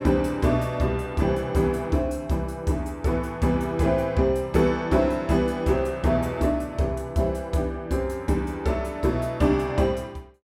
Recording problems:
none

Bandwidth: 17 kHz